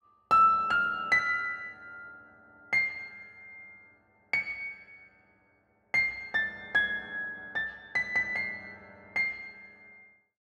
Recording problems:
none

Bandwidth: 12.5 kHz